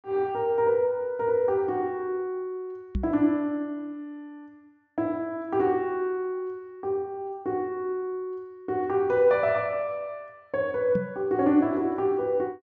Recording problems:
treble missing; nothing above 8 kHz
microphone thump; at 3 s and at 11 s; peak +2 dB vs average level

